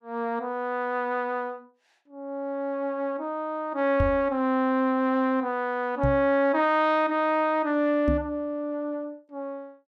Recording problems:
microphone thump; at 4 s, at 6 s and at 8 s; peak +3 dB vs average level

